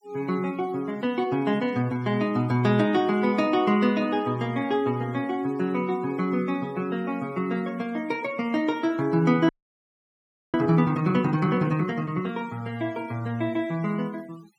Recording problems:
noise reduction artefacts; signal-to-artefact ratio 25 dB
frozen audio; at 9.5 s for 1 s

